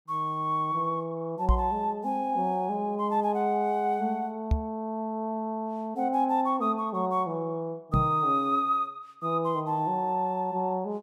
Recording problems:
microphone thump; at 1.5 s, at 4.5 s and at 8 s; peak +7 dB vs average level

